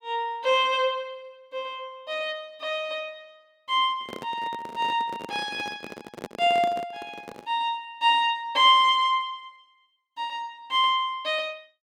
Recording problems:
microphone handling noise; from 4 to 7.5 s; peak -6 dB vs average level

